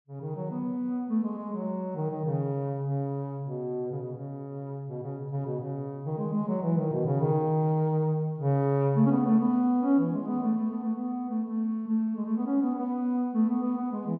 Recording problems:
none

